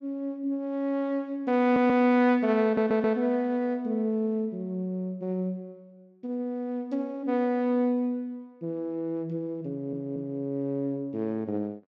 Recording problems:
stutter; at 1.5 s, at 2.5 s and at 9.5 s

